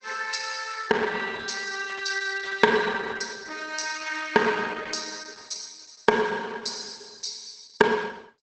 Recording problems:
lossy compression; Opus, log-spectral distance 9 dB, nothing above 8 kHz

